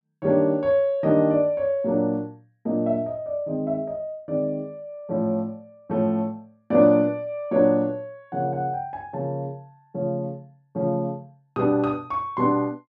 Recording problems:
none

